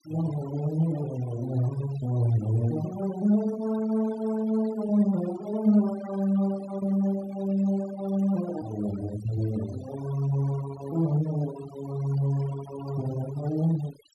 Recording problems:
noise reduction artefacts; signal-to-artefact ratio 17 dB

